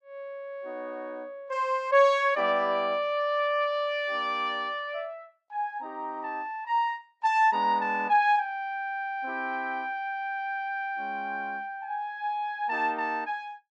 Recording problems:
none

